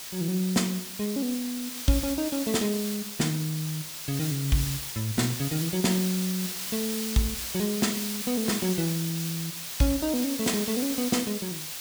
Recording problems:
background hiss; slope +2 dB per octave, SNR 4 dB

